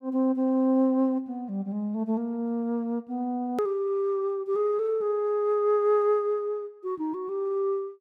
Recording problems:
edit click; at 3.5 s

